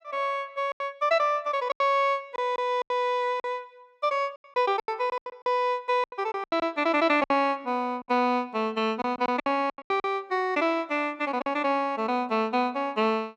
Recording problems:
lost packets; 10% of the sound replaced, filled with silence

